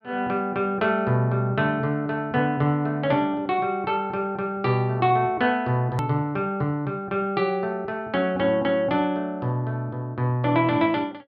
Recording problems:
hard cut with a click; at 6 s

